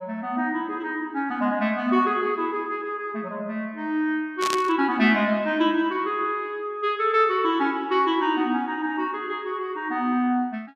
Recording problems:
static burst; at 4.5 s; peak 0 dB vs average level

